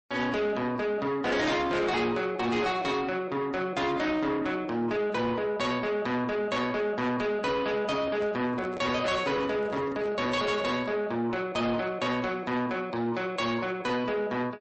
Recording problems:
lossy codec; MP3, log-spectral distance 2 dB, nothing above 8.2 kHz
distorted audio; soft clipping, signal-to-distortion ratio 10 dB
handling noise; from 8 to 11 s; peak -4 dB vs average level

